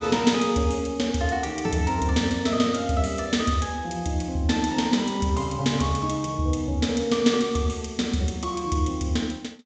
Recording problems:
treble missing; nothing above 8 kHz

